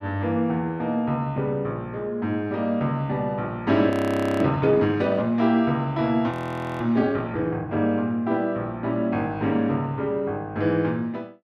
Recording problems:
audio freezing; at 4 s for 0.5 s and at 6.5 s

